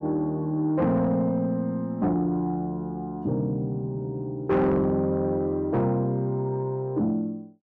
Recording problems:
distortion; soft clipping, signal-to-distortion ratio 11 dB

